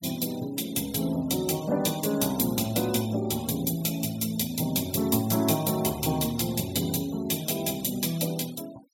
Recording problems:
noise reduction artefacts; signal-to-artefact ratio 18 dB

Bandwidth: 17.5 kHz